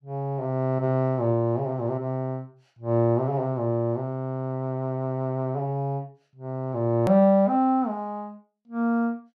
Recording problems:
click at an edit; at 7 s

